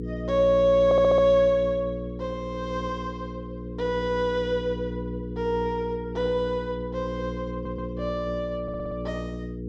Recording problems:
electrical hum; 60 Hz, harmonics up to 480 Hz, SNR 8 dB
stutter; at 1 s, at 7.5 s and at 8.5 s

